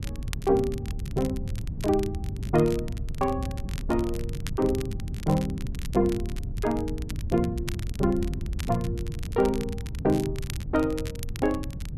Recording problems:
wind on the microphone; below 130 Hz, SNR 6 dB
crackling; vinyl, SNR 16 dB

